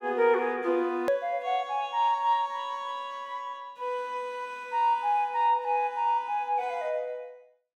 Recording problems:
edit click; at 1 s

